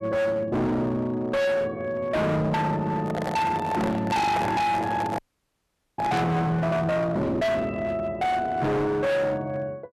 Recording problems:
distorted audio; hard clipping, signal-to-distortion ratio 6 dB
handling noise; from 3 to 6 s; peak -1 dB vs average level
audio freezing; at 5 s for 1 s

